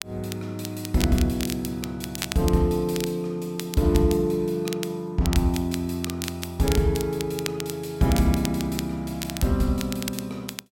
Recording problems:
crackle; vinyl, SNR 10 dB

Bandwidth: 16 kHz